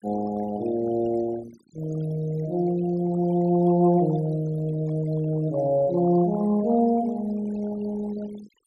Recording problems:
denoising artefacts; signal-to-artefact ratio 19 dB

